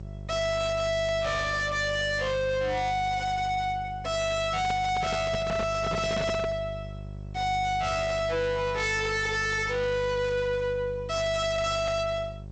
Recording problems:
lossy compression; G.722, log-spectral distance 3 dB, nothing above 7.3 kHz
distortion; soft clipping, signal-to-distortion ratio 6 dB
electrical hum; 50 Hz, harmonics up to 750 Hz, SNR 13 dB
handling noise; from 4.5 to 6.5 s; peak +1 dB vs average level

